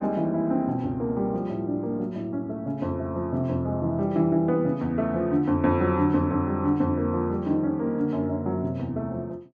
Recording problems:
none

